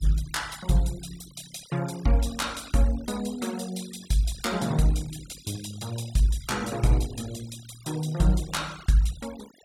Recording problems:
noise reduction artefacts; signal-to-artefact ratio 18 dB

